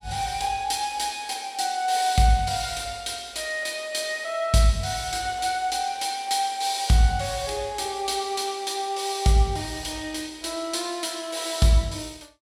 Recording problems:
none

